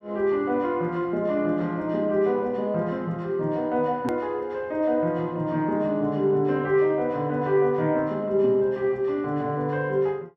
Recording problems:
hard cut with a click; at 4 s

